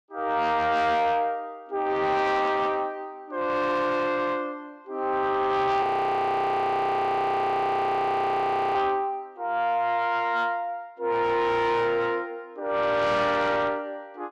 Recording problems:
distortion; soft clipping, signal-to-distortion ratio 11 dB
frozen audio; at 6 s for 3 s

